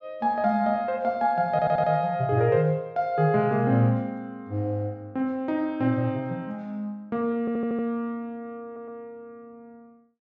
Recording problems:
stutter; at 1.5 s, at 7.5 s and at 8.5 s

